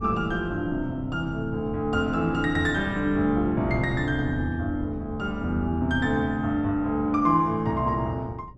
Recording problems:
wind noise; below 160 Hz, SNR 14 dB

